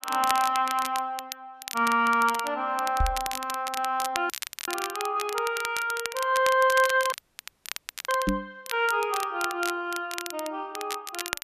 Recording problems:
crackle; vinyl, SNR 9 dB
microphone thump; at 3 s and at 8.5 s; peak +3 dB vs average level
dropout; at 4.5 s and at 7 s for 1 s

